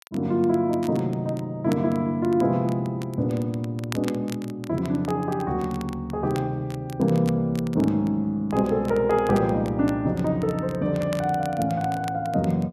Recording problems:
crackle; vinyl, SNR 21 dB

